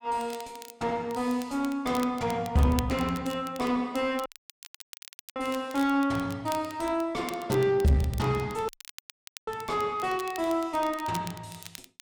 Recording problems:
distorted audio; soft clipping, signal-to-distortion ratio 8 dB
crackle; vinyl, SNR 17 dB
dropout; at 4.5 s for 1 s and at 8.5 s for 1 s

